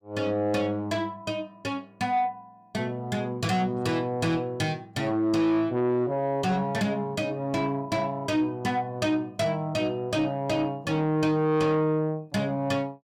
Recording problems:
distorted audio; soft clipping, signal-to-distortion ratio 12 dB

